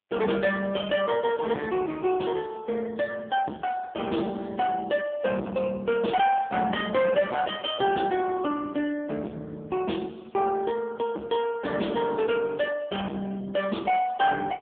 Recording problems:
telephone audio; 220 Hz to 3.5 kHz, AMR-NB
distorted audio; soft clipping, signal-to-distortion ratio 6 dB

